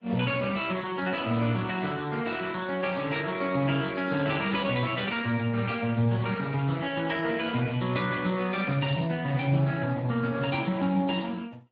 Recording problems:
lossy compression; MP3, then Speex, log-spectral distance 4 dB

